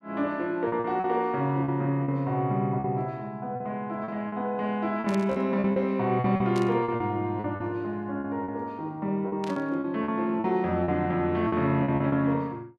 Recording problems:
lost packets; 10% of the sound replaced, filled with repeated pitch periods
burst of static; at 5 s, at 6.5 s and at 9.5 s; peak -10 dB vs average level

